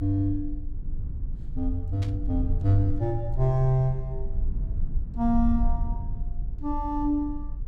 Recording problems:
low-frequency rumble; below 56 Hz, strongest tone 20 Hz, SNR 6 dB
burst of static; at 2 s; peak -12 dB vs average level

